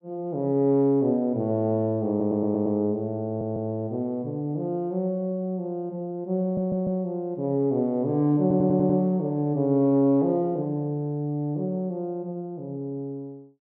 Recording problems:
audio stuttering; 4 times, first at 2 s

